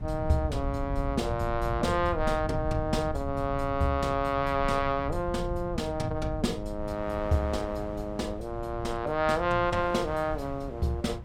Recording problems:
rumble; below 120 Hz, SNR 8 dB
wind noise; below 1.3 kHz, SNR 22 dB

